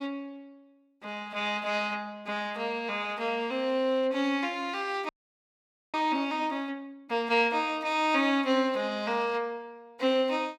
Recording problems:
audio freezing; at 5 s for 1 s

